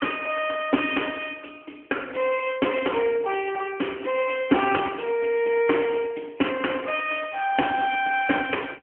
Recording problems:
phone line; 220 Hz to 3.3 kHz, AMR-NB

